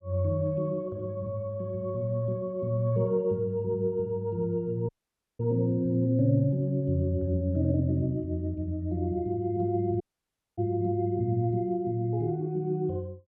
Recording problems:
dropout; at 5 s for 0.5 s and at 10 s for 0.5 s

